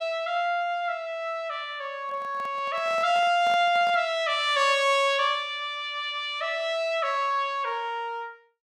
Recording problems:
handling noise; from 2 to 4 s; peak -11 dB vs average level

